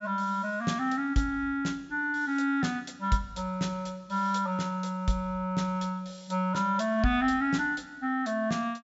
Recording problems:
low-pass filter; nothing above 8 kHz

